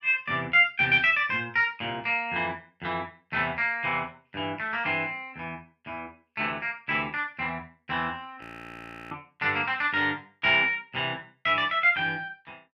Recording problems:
frozen audio; at 8.5 s for 0.5 s

